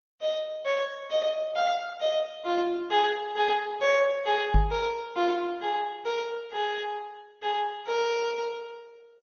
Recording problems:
lossy codec; MP2, then Opus, log-spectral distance 3 dB, nothing above 5.7 kHz
microphone thump; at 4.5 s; peak +8 dB vs average level

